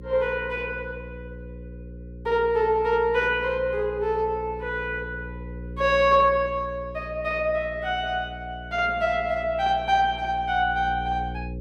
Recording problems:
hum; 60 Hz, harmonics up to 540 Hz, SNR 15 dB

